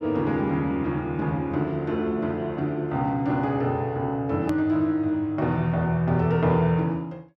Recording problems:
edit click; at 4.5 s

